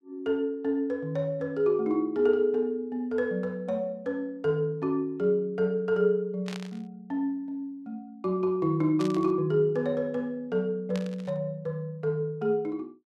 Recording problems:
static burst; at 6.5 s, at 9 s and at 11 s; peak -8 dB vs average level

